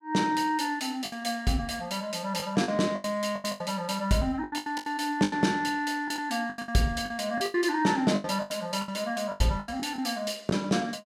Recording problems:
lost packets; 13% of the sound replaced, filled with the last packet

